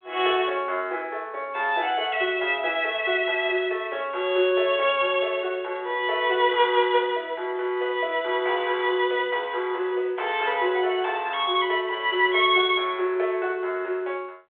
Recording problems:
phone line; 320 Hz to 3.5 kHz, G.726

